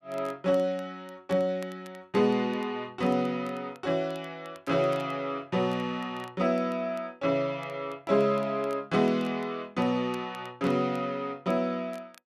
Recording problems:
crackling; vinyl, SNR 28 dB

